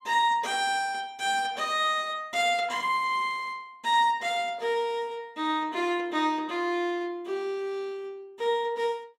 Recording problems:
none

